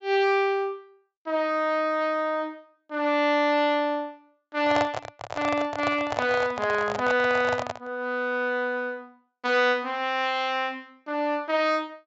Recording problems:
low-pass filter; nothing above 8 kHz
microphone handling noise; from 4.5 to 8 s; peak +2 dB vs average level

